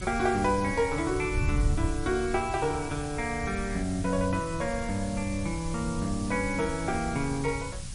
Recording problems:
lossy codec; MP3, log-spectral distance 9 dB
hiss; slope +2 dB per octave, SNR 14 dB
wind noise; below 110 Hz, SNR 7 dB

